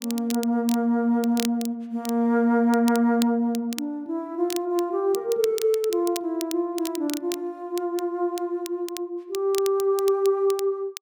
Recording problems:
crackle; vinyl, SNR 14 dB

